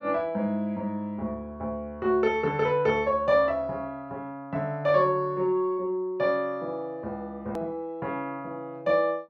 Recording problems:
edit click; at 7.5 s

